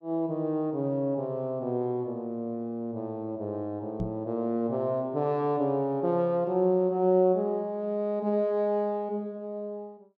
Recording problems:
microphone bump; at 4 s; peak +1 dB vs average level

